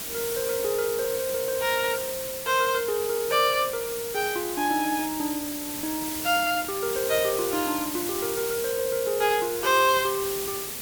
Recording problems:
background hiss; slope -1 dB per octave, SNR 5 dB

